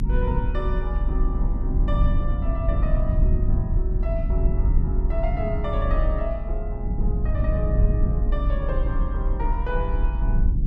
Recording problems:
low-frequency rumble; below 62 Hz, strongest tone 30 Hz, SNR -7 dB

